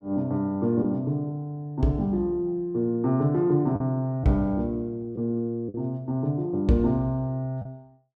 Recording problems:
packet loss; 1.9% of the sound replaced, filled with the last packet

